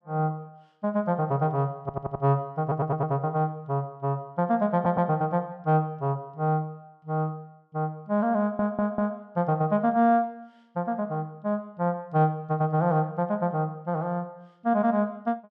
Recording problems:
audio stuttering; 4 times, first at 2 s

